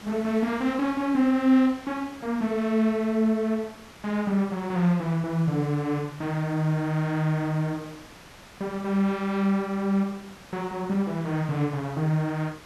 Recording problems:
hiss; slope -3 dB per octave, SNR 21 dB

